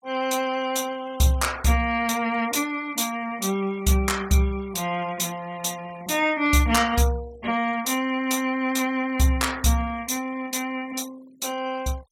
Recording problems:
noise reduction artefacts; signal-to-artefact ratio 21 dB

